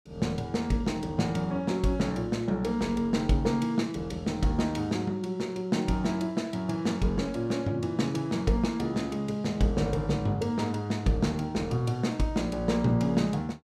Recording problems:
none

